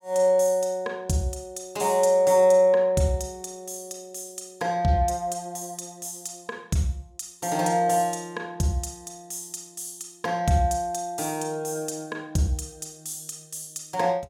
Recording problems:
none

